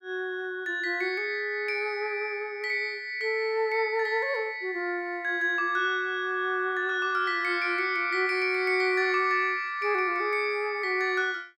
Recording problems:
none

